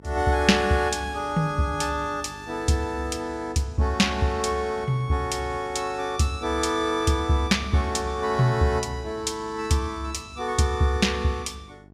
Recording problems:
hum; 50 Hz, harmonics up to 1.1 kHz, SNR 22 dB

